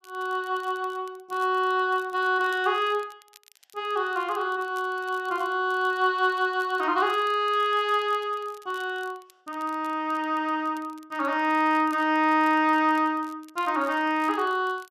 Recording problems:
crackle; vinyl, SNR 28 dB

